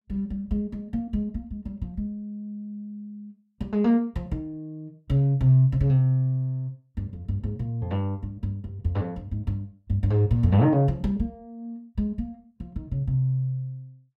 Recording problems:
none

